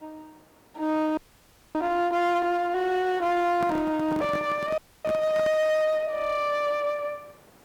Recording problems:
distorted audio; hard clipping, uneven, signal-to-distortion ratio 9 dB
hiss; slope -6 dB per octave, SNR 29 dB
frozen audio; at 1 s for 0.5 s and at 5 s
microphone handling noise; from 3.5 to 5.5 s; peak -3 dB vs average level

